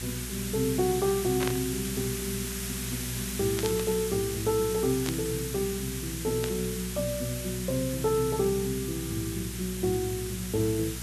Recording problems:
hum; 60 Hz, harmonics up to 480 Hz, SNR 10 dB
hiss; slope +2 dB per octave, SNR 5 dB
static burst; 4 times, first at 1.5 s; peak 0 dB vs average level

